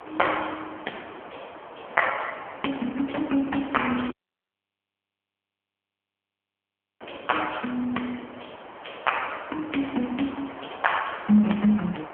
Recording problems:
telephone audio; 240 Hz to 3.2 kHz, AMR-NB
background hiss; SNR 15 dB
wind on the microphone; below 910 Hz, SNR 22 dB
dropout; at 4 s for 3 s

